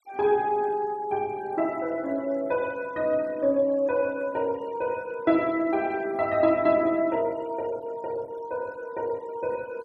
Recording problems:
denoising artefacts; signal-to-artefact ratio 25 dB

